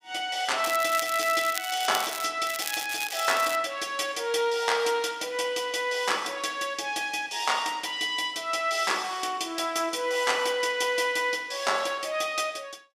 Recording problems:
crackling; from 0.5 to 2 s and from 2.5 to 3.5 s; loose cable, SNR 8 dB

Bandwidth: 15.5 kHz